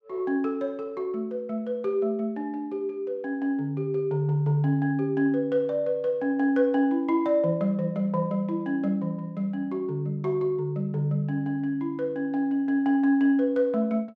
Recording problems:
none

